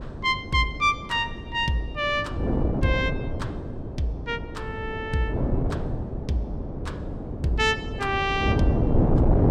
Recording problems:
wind noise; below 320 Hz, SNR 3 dB

